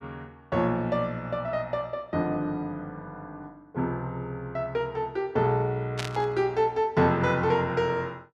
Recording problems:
static burst; at 6 s; peak -1 dB vs average level

